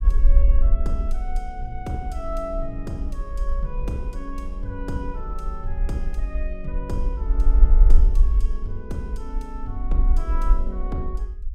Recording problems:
rumble; below 44 Hz, SNR -8 dB

